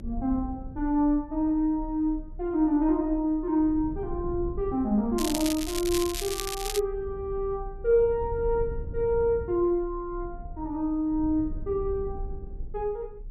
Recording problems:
rumble; below 74 Hz, strongest tone 30 Hz, SNR 13 dB
crackling; from 5 to 7 s; loose cable, SNR 6 dB

